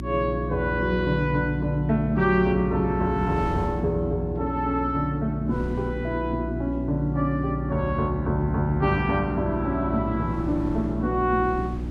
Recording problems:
electrical hum; 60 Hz, harmonics up to 360 Hz, SNR 6 dB
wind on the microphone; below 340 Hz, SNR 16 dB

